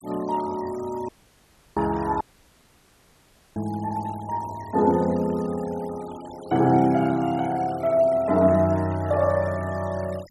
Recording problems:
noise reduction artefacts; signal-to-artefact ratio 22 dB
dropout; at 1 s for 0.5 s and at 2 s for 1.5 s

